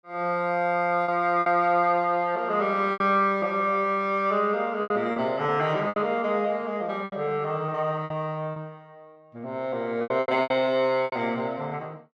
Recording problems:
lost packets; 8% of the sound replaced, filled with repeated pitch periods

